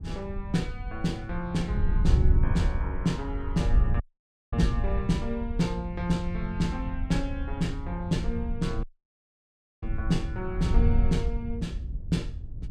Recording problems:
wind noise; below 78 Hz, SNR 0 dB
dropout; at 4 s for 0.5 s and at 9 s for 1 s

